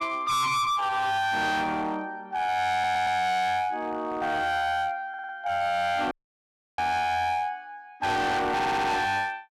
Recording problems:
distorted audio; hard clipping, signal-to-distortion ratio 6 dB
audio stuttering; at 2.5 s, at 5 s and at 8.5 s
audio cutting out; at 6 s for 0.5 s

